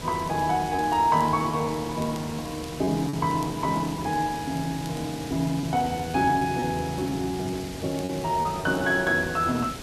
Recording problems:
background hiss; SNR 11 dB
crackle; vinyl, SNR 25 dB
packet loss; 4% of the sound replaced, filled with repeated pitch periods

